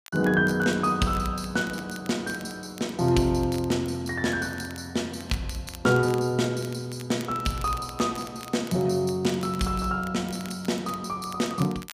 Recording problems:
crackling; vinyl, SNR 19 dB

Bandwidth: 15 kHz